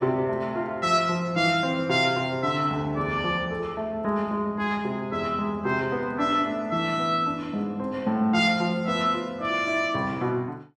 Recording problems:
none

